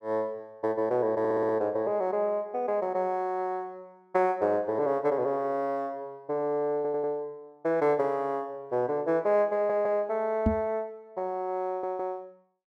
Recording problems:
stutter; 4 times, first at 1 s
microphone bump; at 10 s; peak +7 dB vs average level

